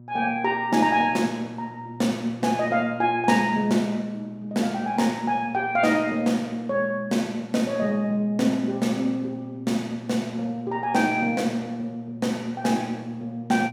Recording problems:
hum; 60 Hz, harmonics up to 600 Hz, SNR 17 dB

